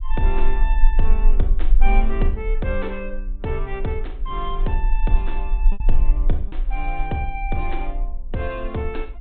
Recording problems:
treble missing; nothing above 4 kHz
low-frequency rumble; below 36 Hz, strongest tone 18 Hz, SNR -4 dB
lost packets; 1.4% of the sound replaced, filled with repeated pitch periods

